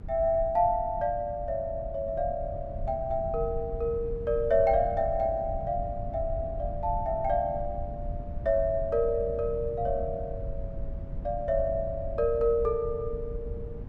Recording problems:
rumble; below 100 Hz, SNR 10 dB

